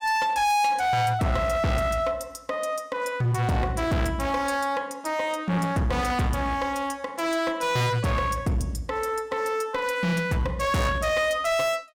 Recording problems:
distortion; hard clipping, uneven, signal-to-distortion ratio 7 dB

